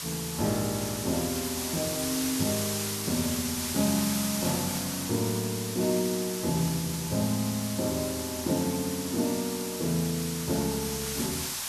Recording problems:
hiss; SNR 2 dB

